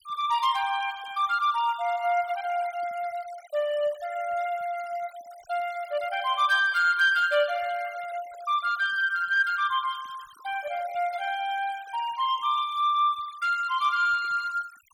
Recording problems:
denoising artefacts; signal-to-artefact ratio 21 dB

